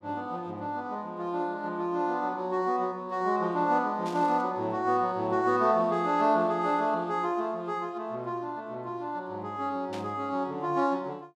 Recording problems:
burst of static; at 4 s and at 10 s; peak -11 dB vs average level

